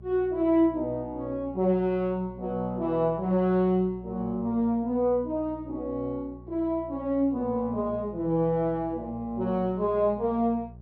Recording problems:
hum; 60 Hz, harmonics up to 600 Hz, SNR 19 dB

